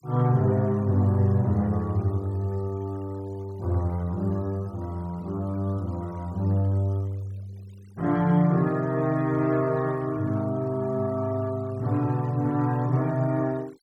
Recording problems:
noise reduction artefacts; signal-to-artefact ratio 28 dB

